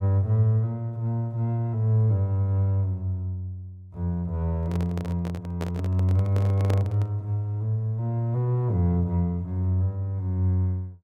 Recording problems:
microphone handling noise; from 4.5 to 7 s; peak -3 dB vs average level

